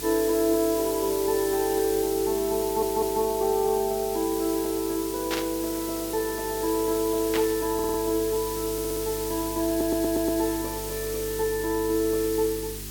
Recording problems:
hum; 50 Hz, harmonics up to 400 Hz, SNR 17 dB
background hiss; slope +2 dB per octave, SNR 8 dB
stutter; 4 times, first at 2.5 s
burst of static; at 5.5 s and at 7.5 s; peak 0 dB vs average level

